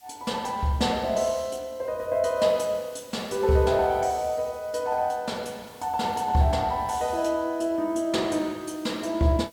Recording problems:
background hiss; slope +2 dB per octave, SNR 26 dB

